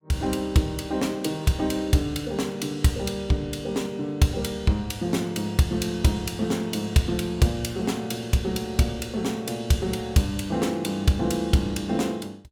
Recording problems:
none

